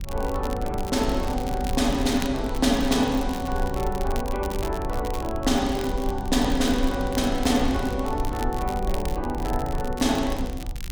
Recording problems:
rumble; below 68 Hz, SNR 8 dB
crackle; vinyl, SNR 15 dB

